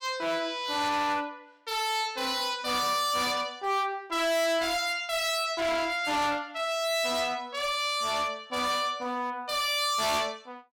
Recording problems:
distortion; hard clipping, signal-to-distortion ratio 6 dB

